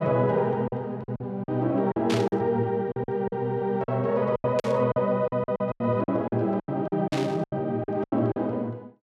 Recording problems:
lost packets; 14% of the sound replaced, filled with silence
burst of static; at 2 s, at 4.5 s and at 7 s; peak -2 dB vs average level

